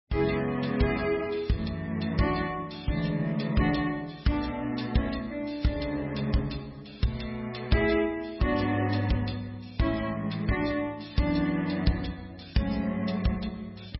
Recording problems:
lossy compression; MP3, log-spectral distance 5 dB, nothing above 5.5 kHz

